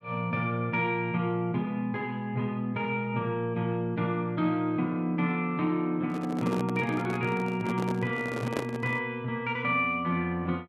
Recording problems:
handling noise; from 6 to 9 s; peak +1 dB vs average level

